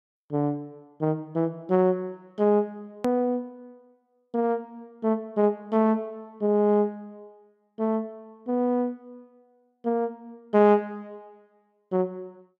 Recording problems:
click at an edit; at 3 s

